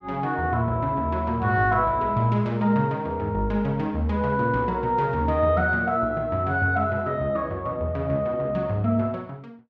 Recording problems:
none

